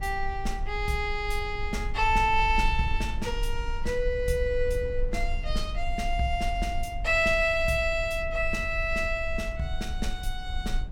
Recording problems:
rumble; below 52 Hz, strongest tone 22 Hz, SNR 7 dB

